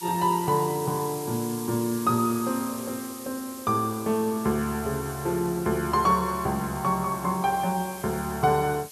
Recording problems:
background hiss; slope +2 dB per octave, SNR 13 dB

